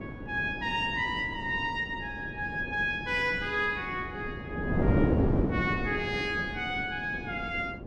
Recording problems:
wind noise; below 400 Hz, SNR 3 dB

